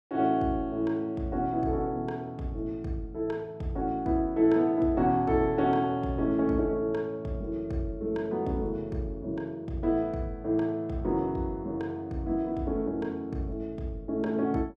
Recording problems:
none

